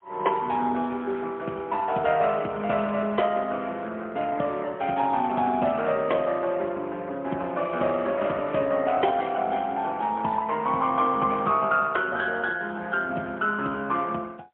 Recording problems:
telephone audio; 280 Hz to 3.3 kHz, AMR-NB, then MP3

